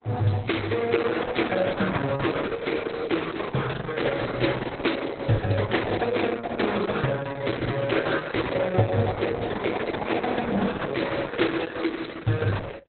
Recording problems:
codec artefacts; Opus, log-spectral distance 7 dB, nothing above 4.1 kHz

